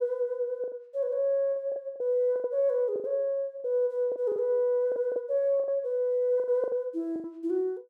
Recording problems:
packet loss; 11% of the sound replaced, filled with the last packet

